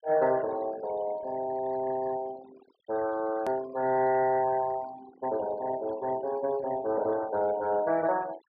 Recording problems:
low-pass filter; nothing above 5 kHz
noise reduction artefacts; signal-to-artefact ratio 19 dB
hard cut with a click; at 3.5 s

